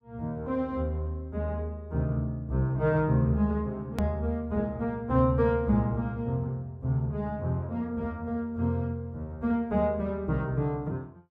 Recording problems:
edit click; at 4 s

